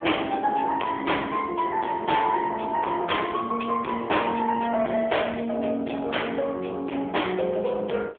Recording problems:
phone line; 240 Hz to 3.5 kHz, AMR-NB
distorted audio; soft clipping, signal-to-distortion ratio 8 dB

